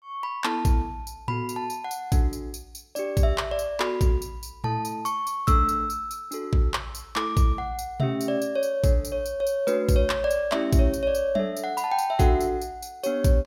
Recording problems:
none

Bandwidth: 16.5 kHz